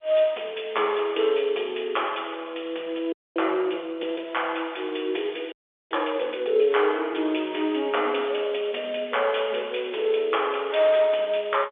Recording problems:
telephone audio; 340 Hz to 3.5 kHz, G.711
audio freezing; at 3 s and at 5.5 s

